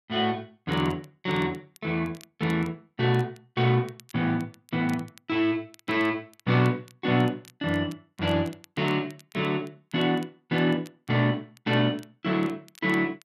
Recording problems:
crackling; vinyl, SNR 27 dB

